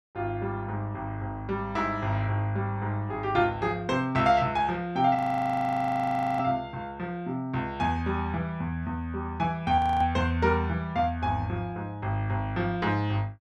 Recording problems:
audio freezing; at 5 s for 1 s and at 10 s

